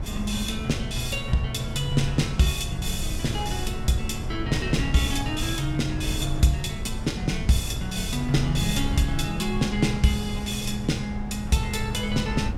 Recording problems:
wind noise; below 120 Hz, SNR 6 dB

